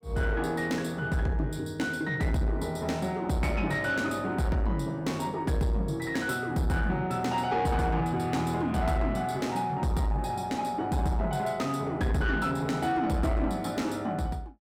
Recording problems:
distorted audio; soft clipping, signal-to-distortion ratio 11 dB

